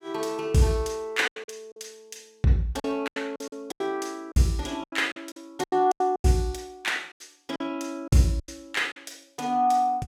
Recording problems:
lost packets; 12% of the sound replaced, filled with silence

